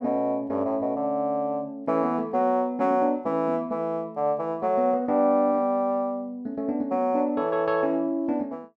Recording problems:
none

